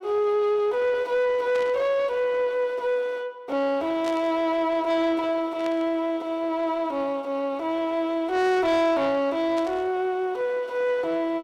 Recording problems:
distortion; soft clipping, signal-to-distortion ratio 11 dB
static burst; 4 times, first at 1.5 s; peak -10 dB vs average level

